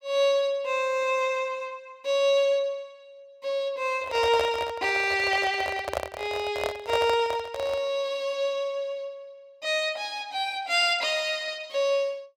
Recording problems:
handling noise; from 4 to 8 s; peak +2 dB vs average level

